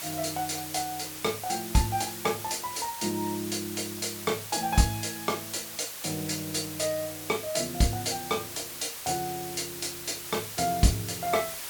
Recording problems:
hiss; slope +1 dB per octave, SNR 7 dB

